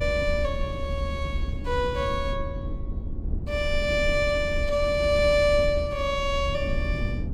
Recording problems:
low-frequency rumble; below 94 Hz, SNR 6 dB

